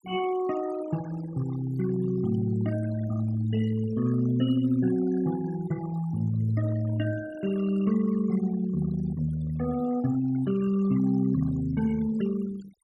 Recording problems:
denoising artefacts; signal-to-artefact ratio 16 dB

